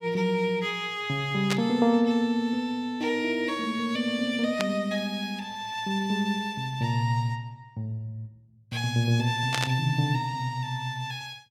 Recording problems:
static burst; at 1.5 s, at 4.5 s and at 9.5 s; peak +3 dB vs average level

